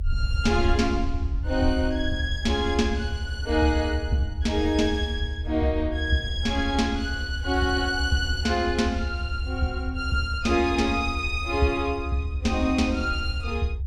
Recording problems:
low-frequency rumble; below 76 Hz, SNR 5 dB

